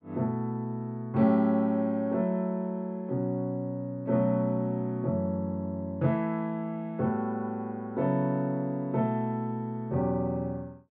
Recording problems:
none

